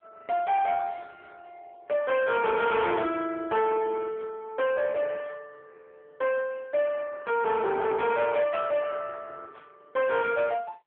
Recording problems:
telephone audio; 370 Hz to 3.3 kHz, AMR-NB
distorted audio; soft clipping, signal-to-distortion ratio 11 dB

